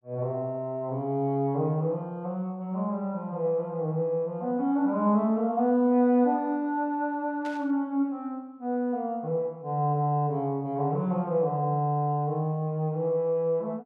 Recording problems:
static burst; at 7.5 s; peak -14 dB vs average level

